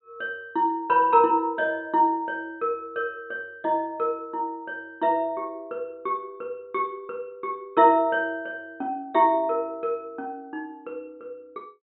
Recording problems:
treble cut off; nothing above 4 kHz

